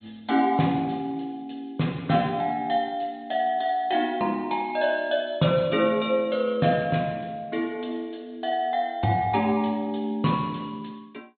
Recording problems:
treble cut off; nothing above 3.7 kHz
lossy codec; MP3, log-spectral distance 2 dB

